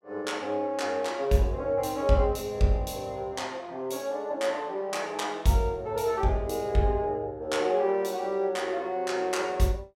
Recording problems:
none

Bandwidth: 16 kHz